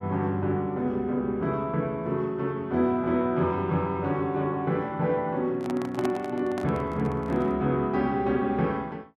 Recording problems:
microphone handling noise; from 5.5 to 7.5 s; peak -2 dB vs average level

